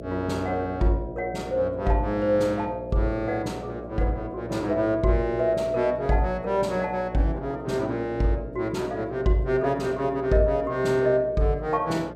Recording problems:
electrical hum; 60 Hz, harmonics up to 660 Hz, SNR 13 dB

